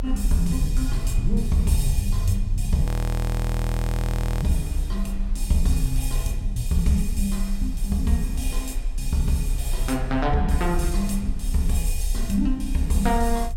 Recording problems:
low-frequency rumble; below 40 Hz, strongest tone 34 Hz, SNR 3 dB
wind on the microphone; below 130 Hz, SNR 20 dB
audio freezing; at 3 s for 1.5 s

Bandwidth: 16.5 kHz